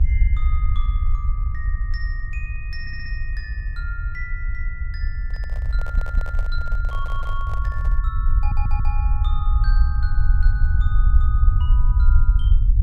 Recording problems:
electrical hum; 50 Hz, harmonics up to 900 Hz, SNR 16 dB
low-frequency rumble; below 60 Hz, SNR -13 dB
audio stuttering; 4 times, first at 3 s
handling noise; from 5.5 to 8 s; peak -1 dB vs average level

